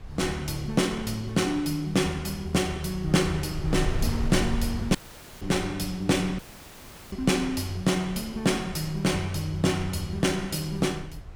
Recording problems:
wind noise; below 94 Hz, SNR 12 dB
audio cutting out; at 5 s and at 6.5 s for 0.5 s

